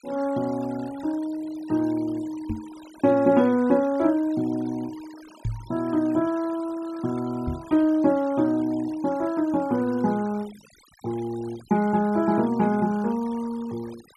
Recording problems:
denoising artefacts; signal-to-artefact ratio 22 dB
microphone thump; at 2.5 s, at 5.5 s and at 7.5 s; peak -1 dB vs average level

